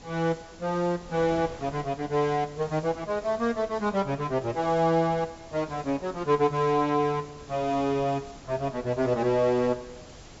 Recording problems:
treble cut off; nothing above 8 kHz
background hiss; slope +3 dB per octave, SNR 26 dB
wind noise; below 850 Hz, SNR 21 dB

